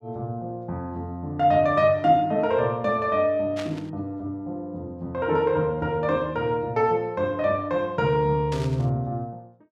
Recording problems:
static burst; at 3.5 s and at 8.5 s; peak -8 dB vs average level

